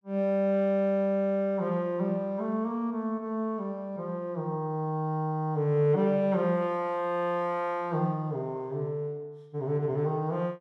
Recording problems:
none

